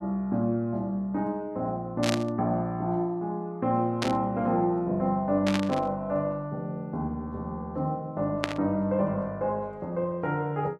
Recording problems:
burst of static; 4 times, first at 2 s; peak +4 dB vs average level

